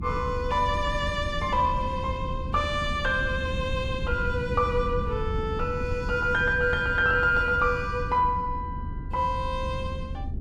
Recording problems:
low-frequency rumble; below 150 Hz, SNR 7 dB

